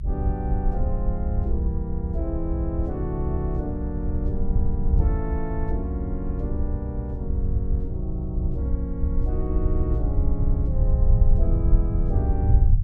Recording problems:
low-frequency rumble; below 76 Hz, SNR -6 dB

